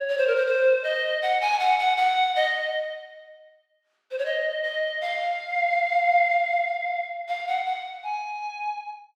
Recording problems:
none

